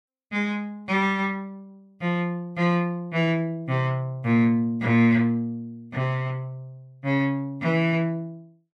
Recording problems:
none

